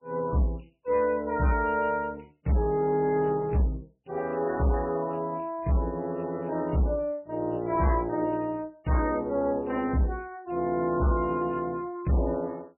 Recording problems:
codec artefacts; MP3, log-spectral distance 3 dB, nothing above 2.8 kHz
distorted audio; hard clipping, signal-to-distortion ratio 11 dB

